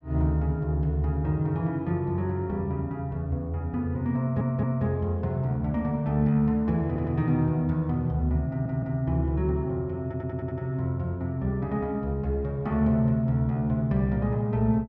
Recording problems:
stutter; 4 times, first at 4 s

